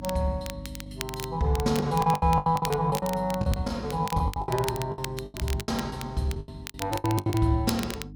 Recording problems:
hum; 50 Hz, harmonics up to 300 Hz, SNR 15 dB
crackle; vinyl, SNR 12 dB
packet loss; 17% of the sound replaced, filled with the last packet

